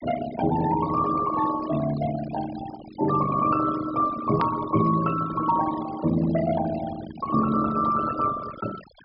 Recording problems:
treble cut off; nothing above 5.5 kHz
denoising artefacts; signal-to-artefact ratio 12 dB
click at an edit; at 4.5 s

